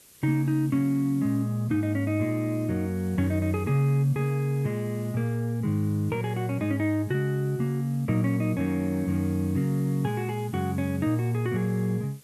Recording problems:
background hiss; SNR 24 dB

